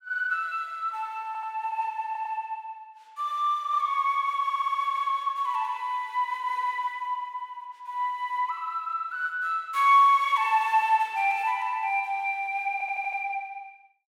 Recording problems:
audio stuttering; 4 times, first at 1.5 s

